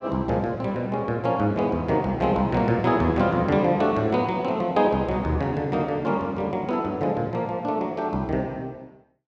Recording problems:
none

